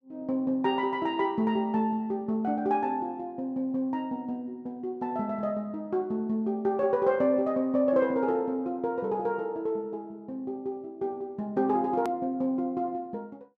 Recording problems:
hard cut with a click; at 12 s

